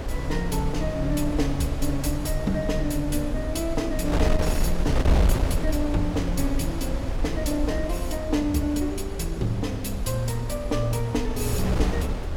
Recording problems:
wind on the microphone; below 100 Hz, SNR 1 dB

